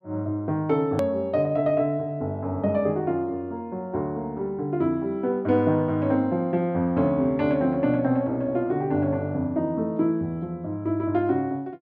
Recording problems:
click at an edit; at 1 s

